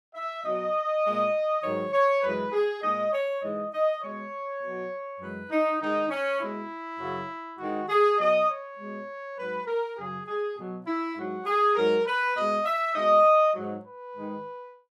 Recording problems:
none

